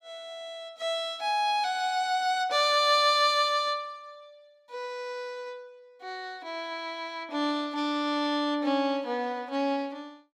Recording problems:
none

